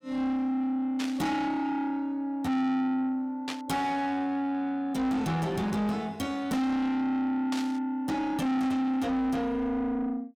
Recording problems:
distortion; soft clipping, signal-to-distortion ratio 6 dB
burst of static; at 1 s, at 3.5 s and at 7.5 s; peak -2 dB vs average level

